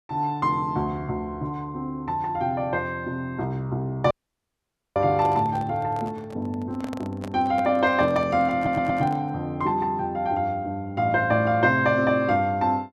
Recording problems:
audio cutting out; at 4 s for 1 s
microphone handling noise; from 5 to 9.5 s; peak -7 dB vs average level
audio stuttering; at 8.5 s

